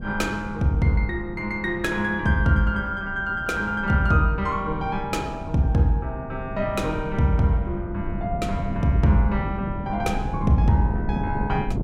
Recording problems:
wind on the microphone; below 200 Hz, SNR 9 dB

